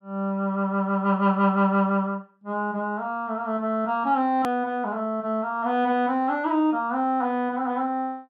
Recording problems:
hard cut with a click; at 4.5 s

